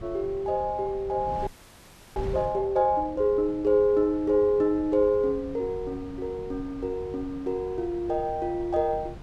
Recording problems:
wind noise; below 210 Hz, SNR 16 dB
frozen audio; at 1.5 s for 0.5 s

